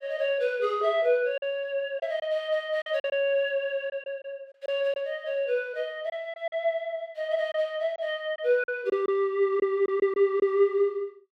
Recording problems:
lost packets; 5% of the sound replaced, filled with silence

